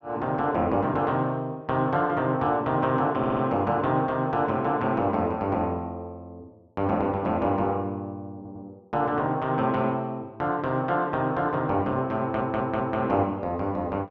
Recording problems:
stutter; at 3 s, at 8.5 s and at 12 s

